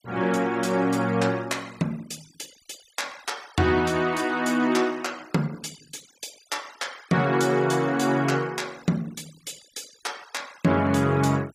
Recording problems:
denoising artefacts; signal-to-artefact ratio 23 dB

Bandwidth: 15.5 kHz